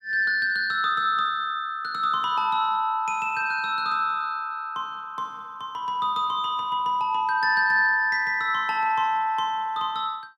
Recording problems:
none

